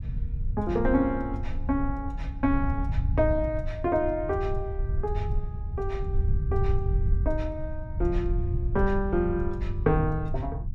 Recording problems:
rumble; below 92 Hz, SNR 2 dB

